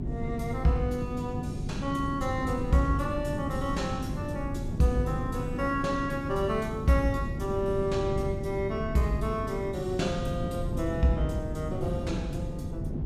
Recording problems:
hum; 50 Hz, harmonics up to 400 Hz, SNR 9 dB
wind noise; below 210 Hz, SNR 5 dB

